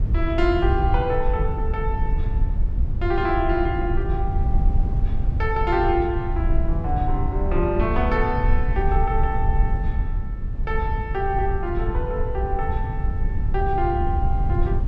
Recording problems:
rumble; below 76 Hz, SNR 0 dB

